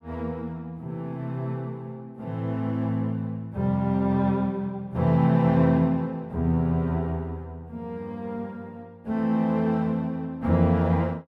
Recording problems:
none

